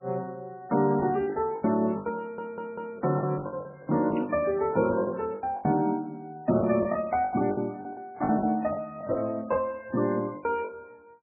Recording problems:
lossy compression; MP3, log-spectral distance 2 dB, nothing above 2.4 kHz
lost packets; 14% of the sound replaced, filled with the last packet
stutter; at 2 s
static burst; at 4 s; peak -13 dB vs average level

